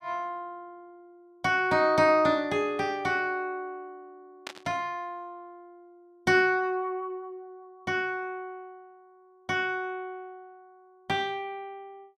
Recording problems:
burst of static; at 4.5 s; peak -5 dB vs average level

